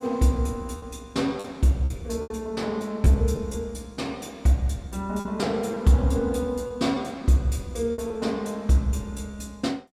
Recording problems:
packet loss; 6% of the sound replaced, filled with repeated pitch periods

